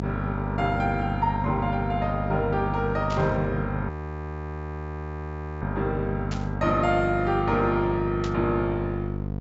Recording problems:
low-pass filter; nothing above 8 kHz
hum; 50 Hz, harmonics up to 950 Hz, SNR 4 dB
burst of static; at 3 s, at 6.5 s and at 8 s; peak -7 dB vs average level
audio freezing; at 4 s for 1.5 s

